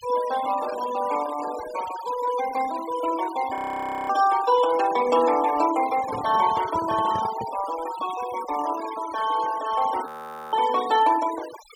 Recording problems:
noise reduction artefacts; signal-to-artefact ratio 15 dB
frozen audio; at 3.5 s for 0.5 s and at 10 s
microphone handling noise; from 6 to 7.5 s; peak -7 dB vs average level

